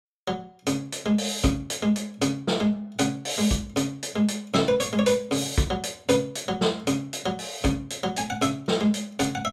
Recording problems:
none

